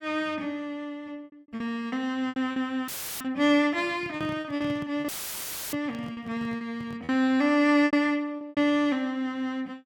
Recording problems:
lost packets; 9% of the sound replaced, filled with repeated pitch periods
dropout; at 3 s and at 5 s for 0.5 s; filled with static
microphone handling noise; from 4 to 7 s; peak -8 dB vs average level

